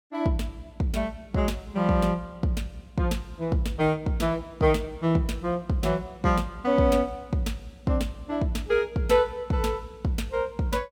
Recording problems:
none

